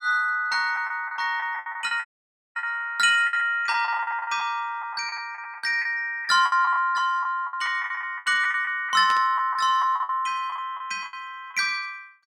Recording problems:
lost packets; 15% of the sound replaced, filled with the last packet
dropout; at 2 s for 0.5 s
burst of static; at 9 s; peak -8 dB vs average level

